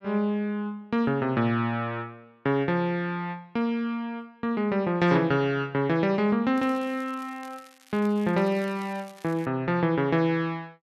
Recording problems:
crackling; from 6.5 to 9.5 s; loose cable, SNR 26 dB

